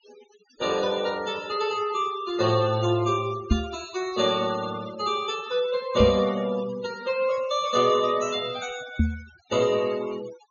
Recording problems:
low-pass filter; nothing above 6.7 kHz
noise reduction artefacts; signal-to-artefact ratio 17 dB
microphone bump; at 3.5 s, at 6 s and at 9 s; peak +7 dB vs average level

